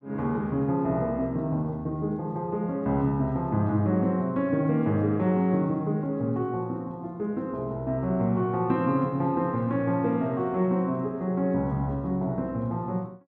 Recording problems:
none

